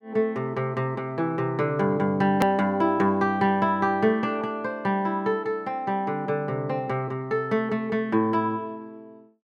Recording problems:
edit click; at 2.5 s

